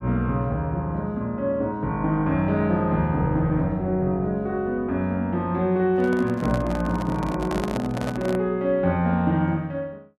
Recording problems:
microphone handling noise; from 6 to 8.5 s; peak -2 dB vs average level

